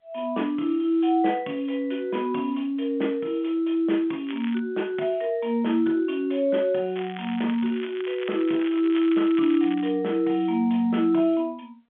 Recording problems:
phone line; 190 Hz to 3.4 kHz, G.711
crackle; at 4.5 s and from 7 to 10 s; loose cable, SNR 17 dB

